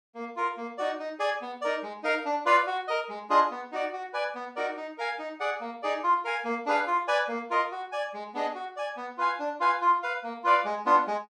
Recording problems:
none

